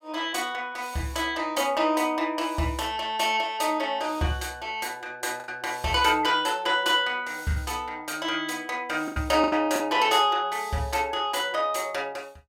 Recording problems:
lost packets; 3% of the sound replaced, filled with the last packet

